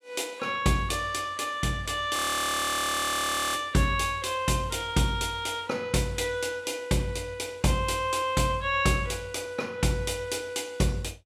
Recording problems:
audio freezing; at 2 s for 1.5 s

